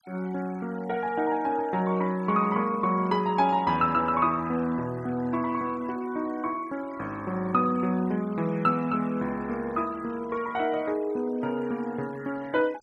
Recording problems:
noise reduction artefacts; signal-to-artefact ratio 22 dB

